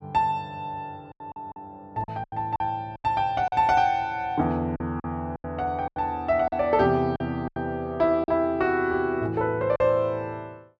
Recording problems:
packet loss; 9% of the sound replaced, filled with silence

